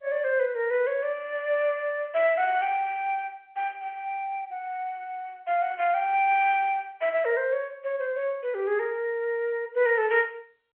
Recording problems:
telephone audio; 300 Hz to 3.3 kHz, G.711

